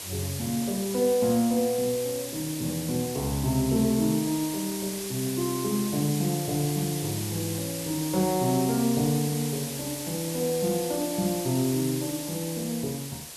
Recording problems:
hiss; SNR 7 dB

